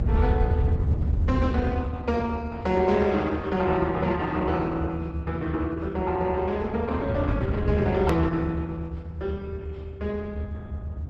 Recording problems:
lossy codec; Opus, log-spectral distance 2 dB, nothing above 13.1 kHz
low-frequency rumble; below 90 Hz, SNR 1 dB
edit click; at 8 s

